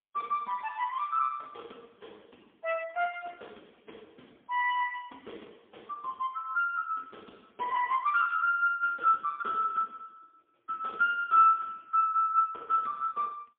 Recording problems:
telephone audio; 240 Hz to 3.3 kHz, AMR-NB, then MP3

